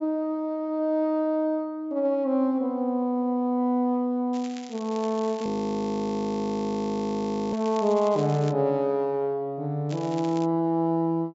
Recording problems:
low-pass filter; nothing above 8 kHz
crackling; from 4.5 to 8.5 s and at 10 s; loose cable, SNR 19 dB
frozen audio; at 5.5 s for 2 s

